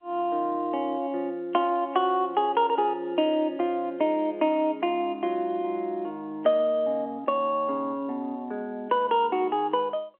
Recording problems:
phone line; 280 Hz to 3.3 kHz, G.711

